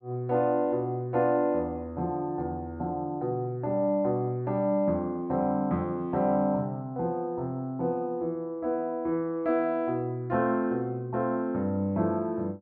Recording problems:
none

